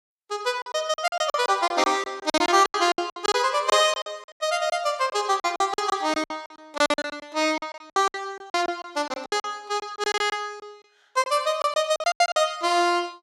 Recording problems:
lost packets; 17% of the sound replaced, filled with silence

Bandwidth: 14.5 kHz